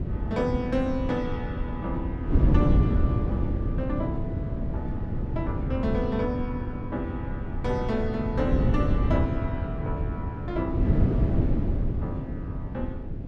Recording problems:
wind noise; below 180 Hz, SNR -4 dB

